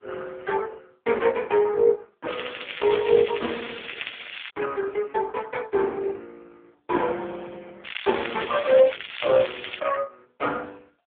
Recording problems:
phone line; 240 Hz to 2.9 kHz, AMR-NB
crackle; from 2.5 to 4.5 s and from 8 to 10 s; loose cable, SNR 9 dB

